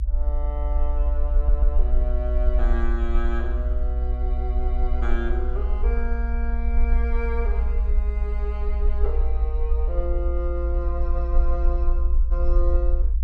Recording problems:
low-frequency rumble; below 58 Hz, SNR -9 dB
stutter; at 1.5 s

